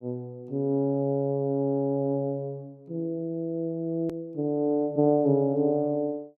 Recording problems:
hard cut with a click; at 4 s

